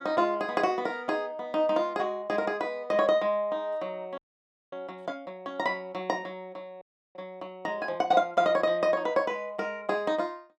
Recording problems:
frozen audio; at 4 s for 0.5 s and at 7 s

